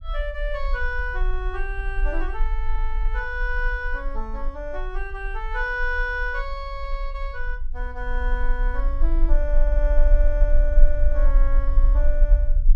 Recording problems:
rumble; below 40 Hz, strongest tone 22 Hz, SNR -4 dB

